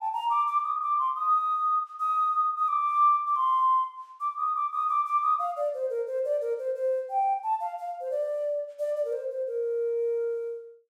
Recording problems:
none

